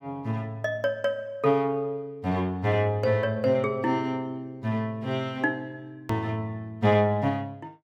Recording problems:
edit click; at 6 s

